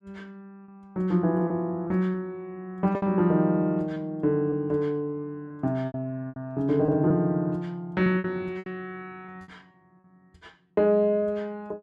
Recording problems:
packet loss; 6% of the sound replaced, filled with repeated pitch periods

